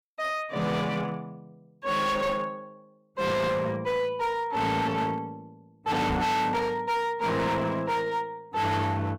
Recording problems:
distorted audio; hard clipping, signal-to-distortion ratio 7 dB
knock on the microphone; at 6 s; peak 0 dB vs average level

